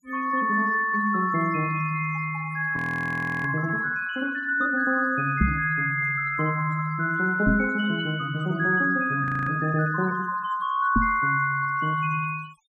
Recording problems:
denoising artefacts; signal-to-artefact ratio 19 dB
audio freezing; at 3 s for 0.5 s and at 9 s
knock on the microphone; at 5.5 s, at 7.5 s and at 11 s; peak +5 dB vs average level

